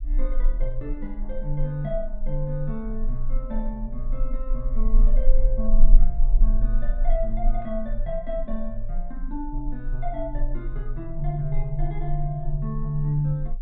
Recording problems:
low-frequency rumble; below 30 Hz, strongest tone 18 Hz, SNR -2 dB

